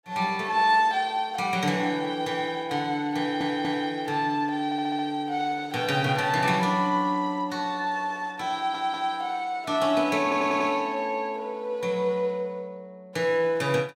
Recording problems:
audio stuttering; 4 times, first at 3 s

